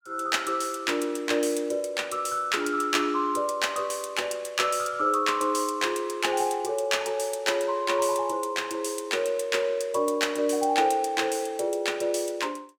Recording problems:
none

